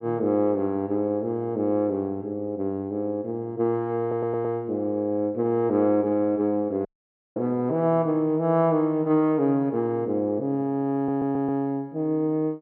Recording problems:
treble cut off; nothing above 5.5 kHz
stutter; at 4 s and at 11 s
dropout; at 7 s for 0.5 s

